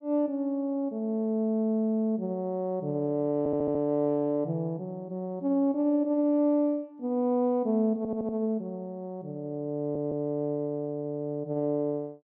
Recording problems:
audio stuttering; at 3.5 s, at 8 s and at 10 s

